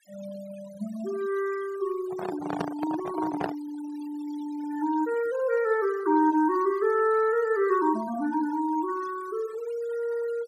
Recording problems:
denoising artefacts; signal-to-artefact ratio 18 dB
microphone handling noise; from 2 to 3.5 s; peak +1 dB vs average level

